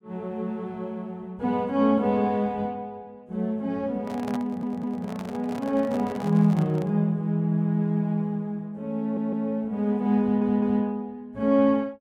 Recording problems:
microphone handling noise; from 4 to 7 s; peak -6 dB vs average level
stutter; at 4.5 s, at 9 s and at 10 s

